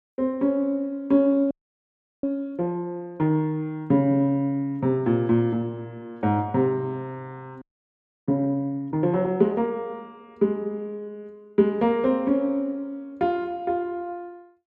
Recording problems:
frozen audio; at 1.5 s for 0.5 s and at 7.5 s for 0.5 s

